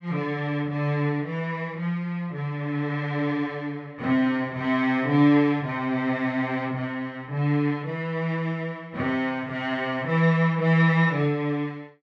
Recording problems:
none

